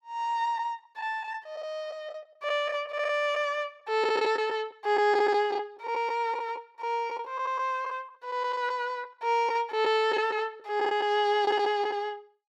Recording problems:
lost packets; 7% of the sound replaced, filled with the last packet

